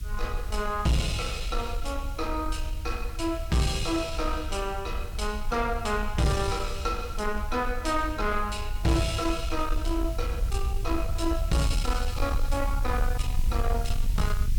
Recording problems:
distorted audio; soft clipping, signal-to-distortion ratio 12 dB
background hiss; slope +3 dB per octave, SNR 19 dB
rumble; below 60 Hz, SNR 4 dB

